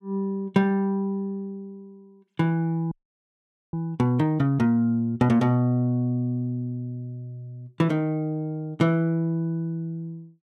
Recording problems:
frozen audio; at 3 s for 1 s

